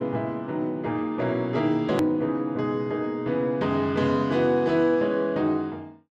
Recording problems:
hard cut with a click; at 2 s

